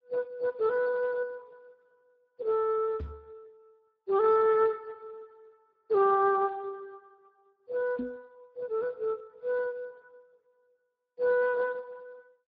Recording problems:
codec artefacts; MP3, then Speex, log-spectral distance 2 dB
microphone thump; at 3 s and at 8 s; peak -5 dB vs average level

